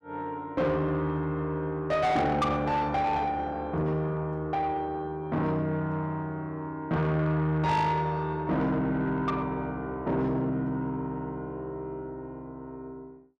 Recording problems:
distortion; soft clipping, signal-to-distortion ratio 10 dB

